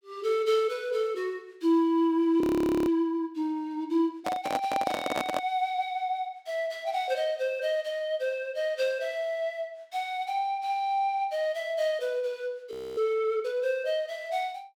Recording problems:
frozen audio; at 2.5 s and at 13 s
handling noise; from 4 to 5.5 s; peak +2 dB vs average level

